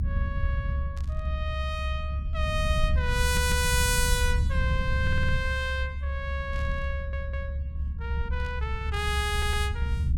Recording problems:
low-frequency rumble; below 82 Hz, SNR -1 dB
burst of static; at 1 s, at 6.5 s and at 8.5 s; peak -15 dB vs average level
audio stuttering; 4 times, first at 3 s

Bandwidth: 17.5 kHz